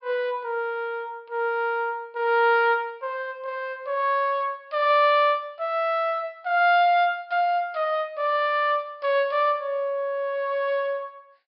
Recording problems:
low-pass filter; nothing above 5.3 kHz

